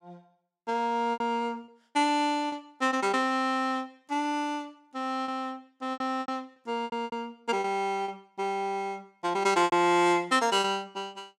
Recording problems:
packet loss; 8% of the sound replaced, filled with repeated pitch periods

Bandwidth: 16.5 kHz